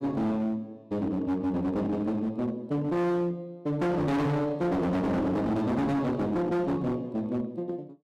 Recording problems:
distortion; hard clipping, uneven, signal-to-distortion ratio 7 dB

